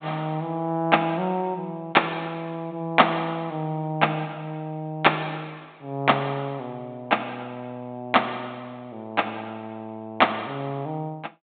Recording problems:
treble missing; nothing above 4 kHz

